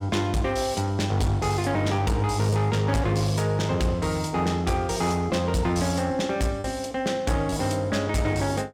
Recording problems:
distortion; hard clipping, uneven, signal-to-distortion ratio 11 dB
packet loss; 1.4% of the sound replaced, filled with repeated pitch periods

